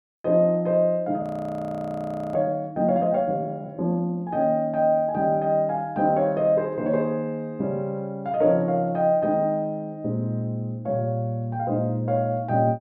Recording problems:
audio freezing; at 1 s for 1 s

